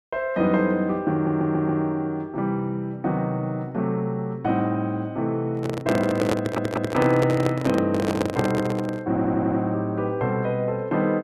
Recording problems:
stutter; at 1 s, at 6.5 s and at 9 s
handling noise; from 5.5 to 9 s; peak +4 dB vs average level

